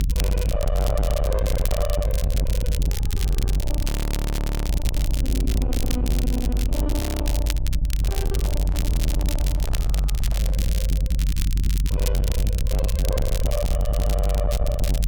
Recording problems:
distorted audio; soft clipping, signal-to-distortion ratio 7 dB
rumble; below 78 Hz, strongest tone 48 Hz, SNR -6 dB
crackling; vinyl, SNR 5 dB
audio freezing; at 4 s for 1 s and at 7 s
handling noise; from 8 to 11 s; peak -1 dB vs average level

